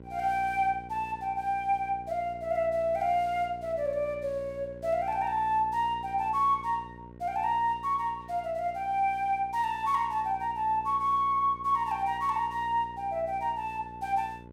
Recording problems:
electrical hum; 60 Hz, harmonics up to 1.1 kHz, SNR 19 dB

